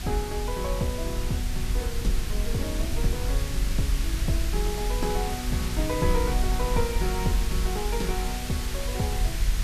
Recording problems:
background hiss; slope +1 dB per octave, SNR 5 dB
low-frequency rumble; below 54 Hz, strongest tone 42 Hz, SNR -1 dB

